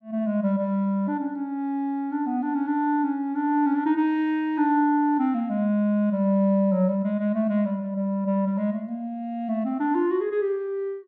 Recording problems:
none

